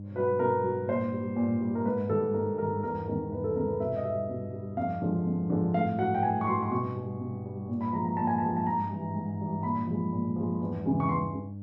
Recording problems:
hum; 50 Hz, harmonics up to 600 Hz, SNR 11 dB

